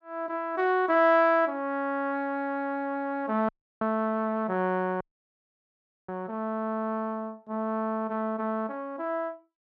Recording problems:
dropout; at 3.5 s and at 5 s for 1 s

